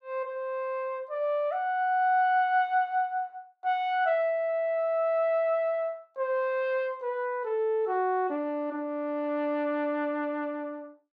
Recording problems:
none

